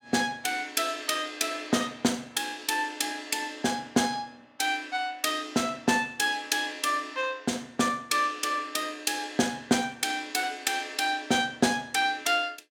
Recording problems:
none

